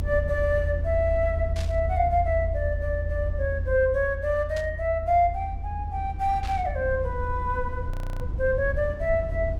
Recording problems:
low-frequency rumble; below 82 Hz, SNR 5 dB
static burst; at 1.5 s, at 4.5 s and at 6.5 s; peak -9 dB vs average level
frozen audio; at 8 s

